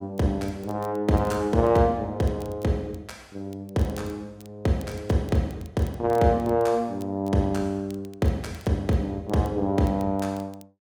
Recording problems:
crackling; vinyl, SNR 28 dB

